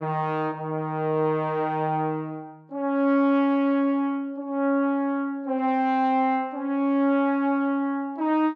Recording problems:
none

